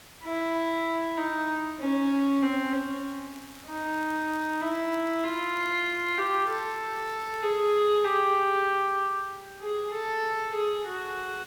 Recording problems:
background hiss; slope -1 dB per octave, SNR 21 dB
crackling; from 3.5 to 7.5 s; loose cable, SNR 27 dB

